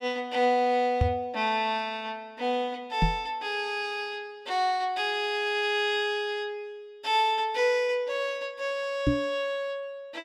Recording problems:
microphone thump; at 1 s, at 3 s and at 9 s; peak +7 dB vs average level

